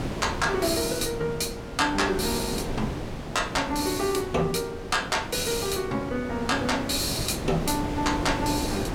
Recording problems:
wind noise; below 620 Hz, SNR 7 dB

